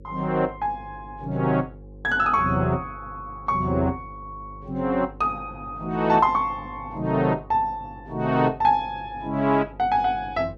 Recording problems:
electrical hum; 50 Hz, harmonics up to 550 Hz, SNR 20 dB

